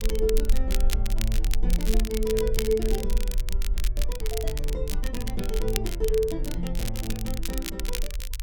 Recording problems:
low-frequency rumble; below 44 Hz, SNR 0 dB
crackling; vinyl, SNR 6 dB

